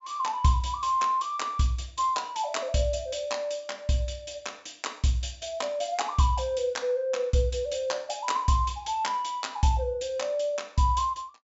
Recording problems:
low-pass filter; nothing above 8 kHz

